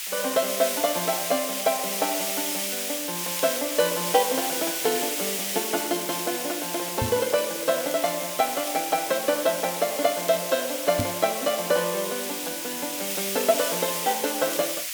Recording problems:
hiss; SNR 2 dB
crackle; vinyl, SNR 21 dB
knock on the microphone; at 7 s and at 11 s; peak +2 dB vs average level

